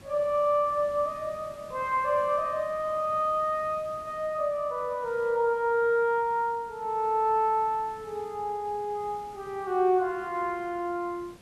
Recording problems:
background hiss; slope -4 dB per octave, SNR 24 dB

